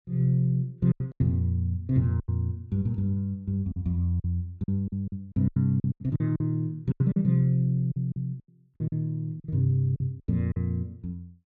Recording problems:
lost packets; 12% of the sound replaced, filled with silence

